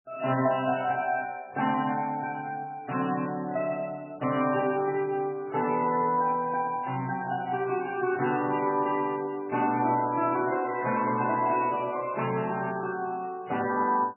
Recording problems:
codec artefacts; MP3, log-spectral distance 3 dB, nothing above 2.7 kHz

